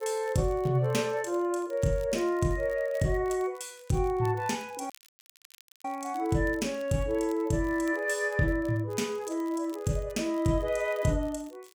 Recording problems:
crackling; vinyl, SNR 27 dB
audio cutting out; at 5 s for 1 s

